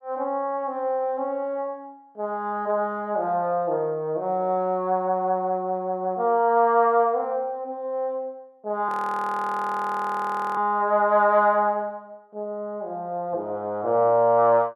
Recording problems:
audio freezing; at 9 s for 1.5 s

